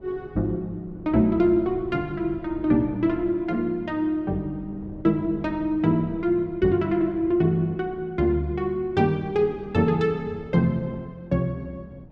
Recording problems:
wind noise; below 300 Hz, SNR 20 dB

